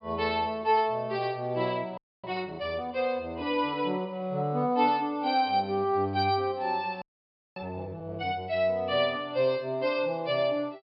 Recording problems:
treble missing; nothing above 5.5 kHz
frozen audio; at 2 s and at 7 s for 0.5 s

